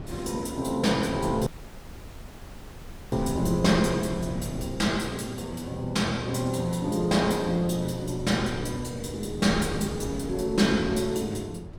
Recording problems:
wind noise; below 240 Hz, SNR 12 dB
dropout; at 1.5 s for 1.5 s

